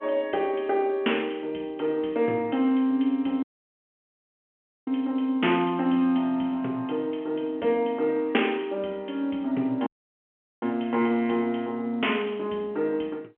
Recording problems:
telephone audio; 190 Hz to 3.3 kHz, G.711
audio cutting out; at 3.5 s for 1.5 s and at 10 s for 1 s

